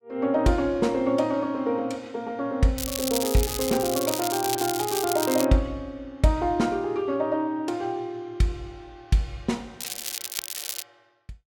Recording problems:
crackle; from 3 to 5.5 s and from 10 to 11 s; loose cable, SNR 5 dB

